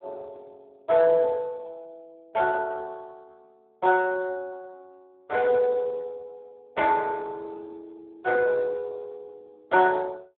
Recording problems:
telephone audio; 340 Hz to 3.1 kHz, Speex

